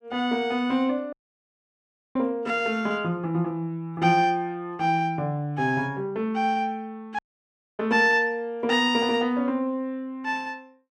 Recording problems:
dropout; at 1 s for 1 s and at 7 s for 0.5 s

